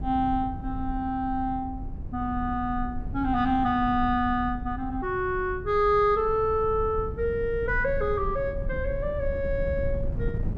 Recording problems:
wind on the microphone; below 100 Hz, SNR 9 dB

